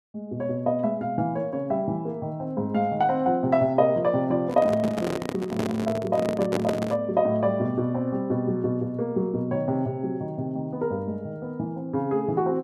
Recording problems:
microphone handling noise; from 4.5 to 7 s; peak +2 dB vs average level

